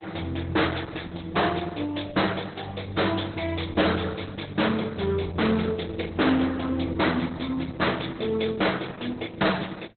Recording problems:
codec artefacts; Opus, log-spectral distance 9 dB, nothing above 4 kHz
distortion; hard clipping, signal-to-distortion ratio 7 dB

